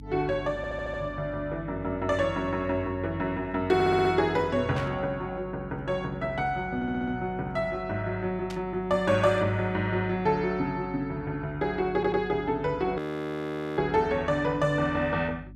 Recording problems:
hum; 50 Hz, harmonics up to 300 Hz, SNR 18 dB
audio stuttering; 4 times, first at 0.5 s
static burst; at 5 s and at 8.5 s; peak -7 dB vs average level
audio freezing; at 13 s for 1 s

